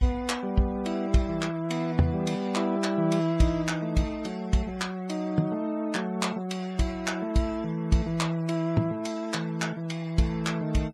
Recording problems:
noise reduction artefacts; signal-to-artefact ratio 23 dB

